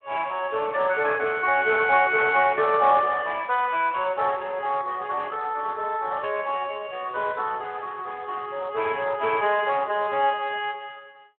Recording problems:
phone line; 300 Hz to 3.5 kHz, Speex

